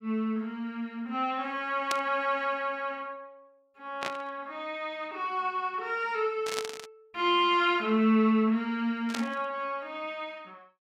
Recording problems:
static burst; 4 times, first at 2 s; peak +1 dB vs average level

